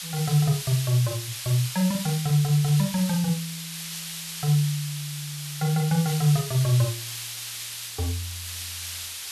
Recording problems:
hiss; slope +5 dB per octave, SNR 8 dB

